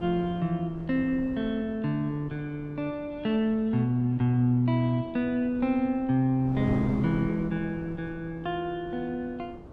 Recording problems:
wind on the microphone; below 400 Hz, SNR 14 dB

